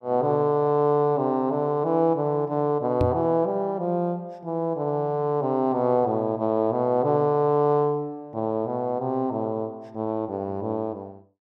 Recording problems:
microphone thump; at 3 s; peak +3 dB vs average level

